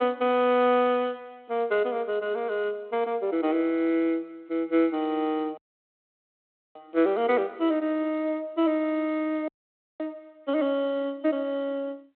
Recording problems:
phone line; 260 Hz to 3.7 kHz, G.726
audio cutting out; at 5.5 s for 1 s and at 9.5 s for 0.5 s

